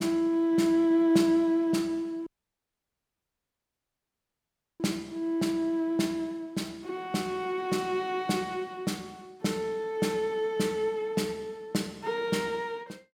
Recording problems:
dropout; at 2.5 s for 2.5 s

